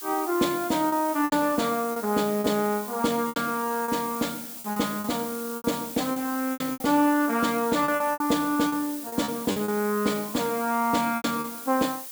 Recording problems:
background hiss; SNR 10 dB
lost packets; 10% of the sound replaced, filled with repeated pitch periods

